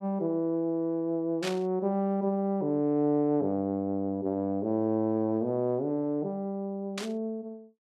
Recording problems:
burst of static; at 1.5 s and at 7 s; peak -1 dB vs average level

